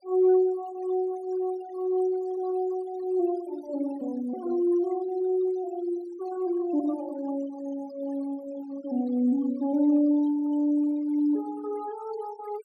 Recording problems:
denoising artefacts; signal-to-artefact ratio 23 dB

